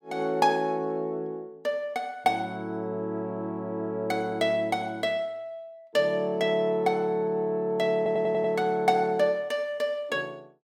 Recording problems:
audio stuttering; at 8 s

